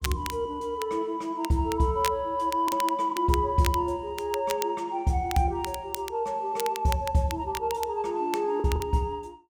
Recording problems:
crackle; vinyl, SNR 12 dB
lost packets; 1.7% of the sound replaced, filled with the last packet

